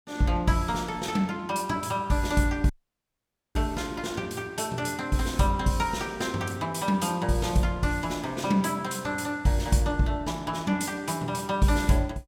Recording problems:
audio cutting out; at 2.5 s for 1 s

